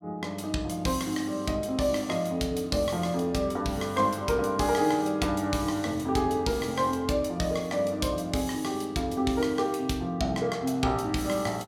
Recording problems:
none

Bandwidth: 16 kHz